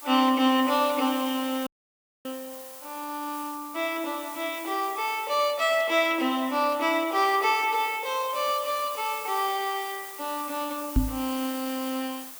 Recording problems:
hiss; SNR 13 dB
audio cutting out; at 1.5 s for 0.5 s
knock on the microphone; at 11 s; peak +7 dB vs average level

